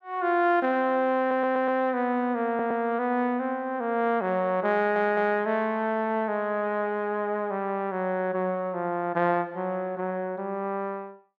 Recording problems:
audio stuttering; at 1 s, at 2.5 s and at 5 s

